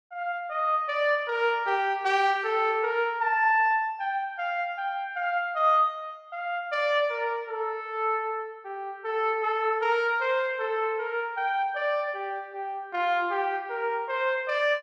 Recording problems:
none

